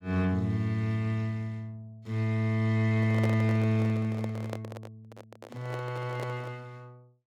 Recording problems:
handling noise; from 3 to 6.5 s; peak -1 dB vs average level

